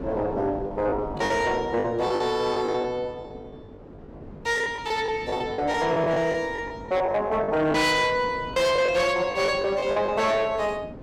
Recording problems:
distortion; soft clipping, signal-to-distortion ratio 10 dB
wind on the microphone; below 470 Hz, SNR 16 dB
packet loss; 11% of the sound replaced, filled with the last packet

